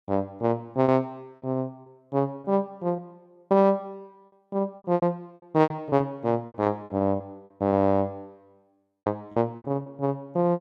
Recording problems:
lost packets; 11% of the sound replaced, filled with repeated pitch periods

